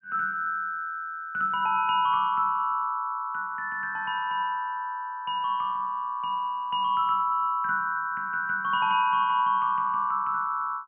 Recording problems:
treble missing; nothing above 3 kHz

